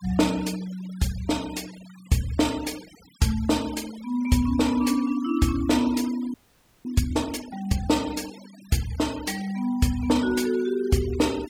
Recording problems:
denoising artefacts; signal-to-artefact ratio 18 dB
frozen audio; at 6.5 s for 0.5 s

